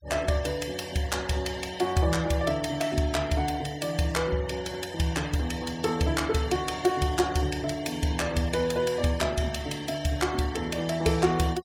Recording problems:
denoising artefacts; signal-to-artefact ratio 19 dB

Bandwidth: 17.5 kHz